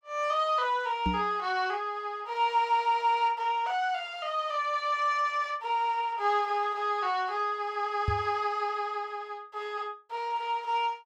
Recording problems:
microphone bump; at 1 s and at 8 s; peak +3 dB vs average level

